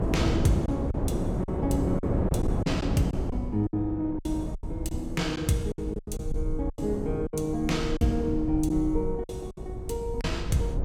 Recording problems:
low-frequency rumble; below 70 Hz, SNR 8 dB
wind on the microphone; below 340 Hz, SNR 3 dB
packet loss; 9% of the sound replaced, filled with silence

